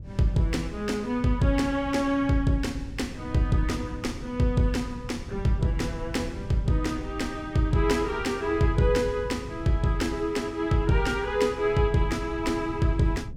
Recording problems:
wind noise; below 140 Hz, SNR 14 dB

